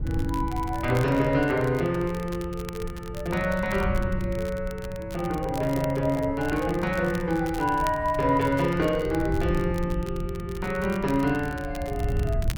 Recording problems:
wind noise; below 110 Hz, SNR 9 dB
crackling; vinyl, SNR 19 dB

